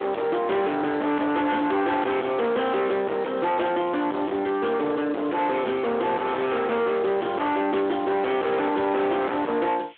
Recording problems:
telephone audio; 260 Hz to 3.5 kHz, Speex
distortion; soft clipping, signal-to-distortion ratio 6 dB
background hiss; SNR 27 dB

